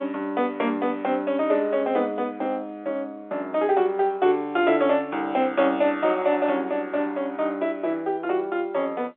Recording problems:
phone line; 240 Hz to 3.6 kHz, G.711

